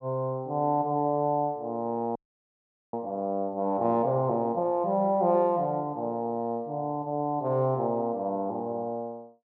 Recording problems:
frozen audio; at 2 s for 1 s

